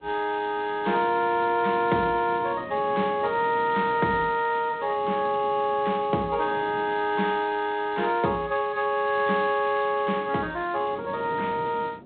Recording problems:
telephone audio; 130 Hz to 3.9 kHz, G.726
wind noise; below 500 Hz, SNR 19 dB

